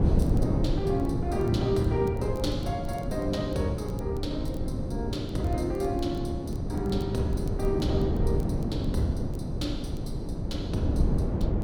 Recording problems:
wind noise; below 240 Hz, SNR -1 dB
crackle; vinyl, SNR 27 dB

